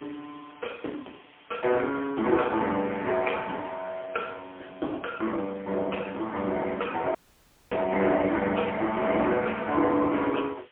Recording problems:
telephone audio; 240 Hz to 3.8 kHz, AMR-NB, then MP3
hiss; SNR 27 dB
dropout; at 7 s for 0.5 s

